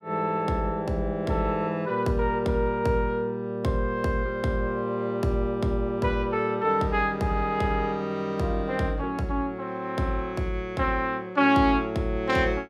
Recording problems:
none

